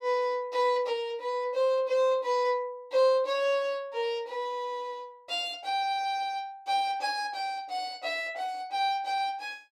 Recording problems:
none

